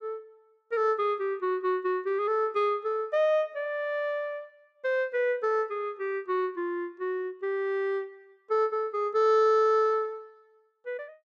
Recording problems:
none

